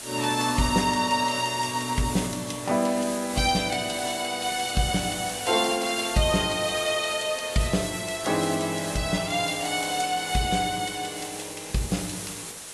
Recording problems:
lossy codec; AAC, log-spectral distance 14 dB, nothing above 11.3 kHz
hiss; slope -1 dB per octave, SNR 9 dB

